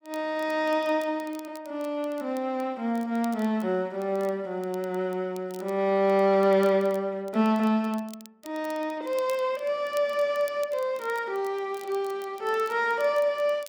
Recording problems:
crackle; vinyl, SNR 24 dB

